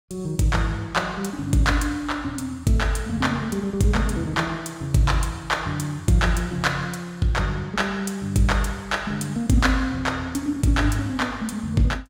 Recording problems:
none

